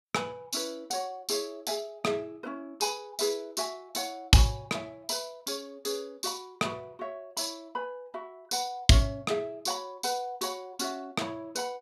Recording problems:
none

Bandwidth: 15.5 kHz